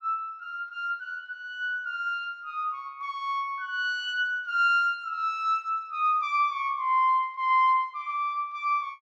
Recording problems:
none

